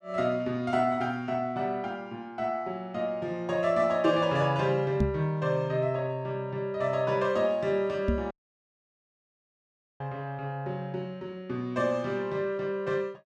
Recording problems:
microphone thump; at 5 s and at 8 s; peak +6 dB vs average level
dropout; at 8.5 s for 1.5 s

